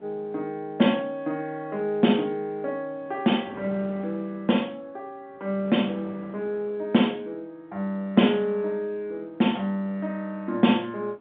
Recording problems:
phone line; 130 Hz to 3.6 kHz, G.711
wind noise; below 790 Hz, SNR 24 dB

